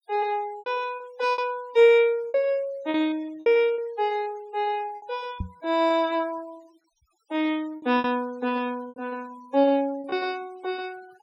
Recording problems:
noise reduction artefacts; signal-to-artefact ratio 27 dB
packet loss; 8% of the sound replaced, filled with repeated pitch periods
microphone bump; at 5.5 s; peak -2 dB vs average level

